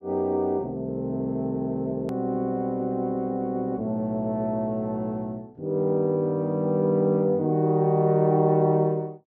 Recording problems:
edit click; at 2 s

